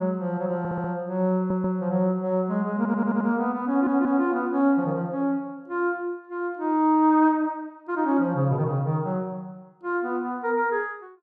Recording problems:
audio stuttering; 4 times, first at 0.5 s

